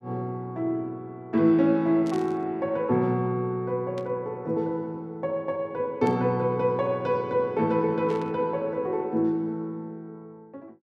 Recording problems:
static burst; 4 times, first at 2 s; peak -14 dB vs average level

